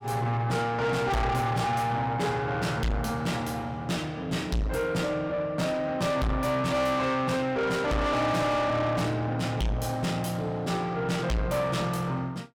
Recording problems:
distorted audio; soft clipping, signal-to-distortion ratio 6 dB

